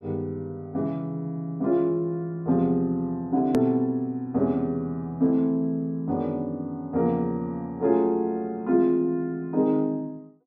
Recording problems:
hard cut with a click; at 3.5 s

